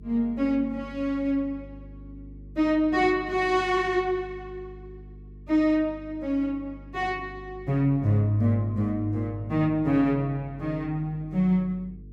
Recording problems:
hum; 50 Hz, harmonics up to 450 Hz, SNR 19 dB

